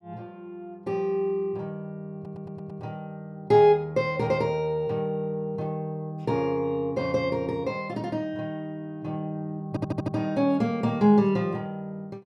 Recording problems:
audio stuttering; at 2 s and at 9.5 s

